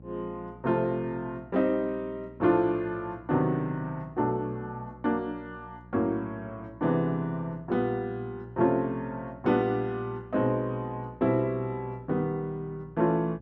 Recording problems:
electrical hum; 60 Hz, harmonics up to 840 Hz, SNR 21 dB

